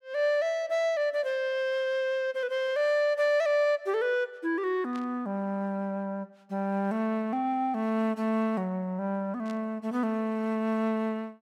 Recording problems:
burst of static; at 5 s and at 9.5 s; peak -15 dB vs average level

